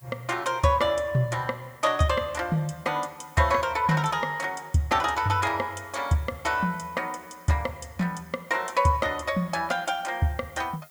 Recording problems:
hiss; SNR 27 dB

